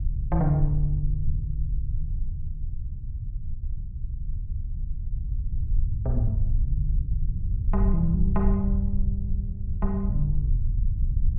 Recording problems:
rumble; below 72 Hz, SNR -1 dB

